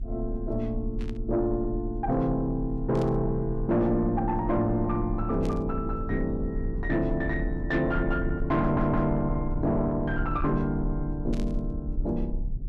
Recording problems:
distortion; soft clipping, signal-to-distortion ratio 12 dB
low-frequency rumble; below 58 Hz, strongest tone 30 Hz, SNR 7 dB
static burst; 4 times, first at 1 s; peak -13 dB vs average level
audio stuttering; at 8.5 s

